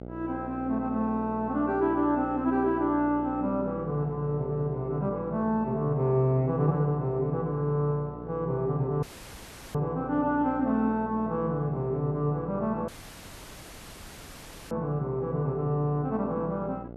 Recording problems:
hum; 60 Hz, harmonics up to 840 Hz, SNR 13 dB
dropout; at 9 s for 0.5 s and at 13 s for 2 s

